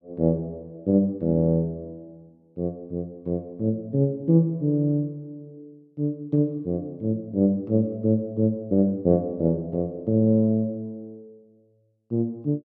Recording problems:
none

